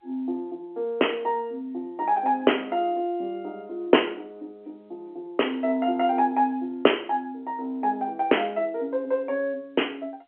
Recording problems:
telephone audio; 220 Hz to 3.2 kHz, G.711

